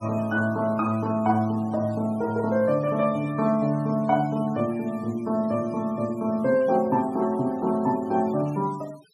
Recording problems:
denoising artefacts; signal-to-artefact ratio 25 dB

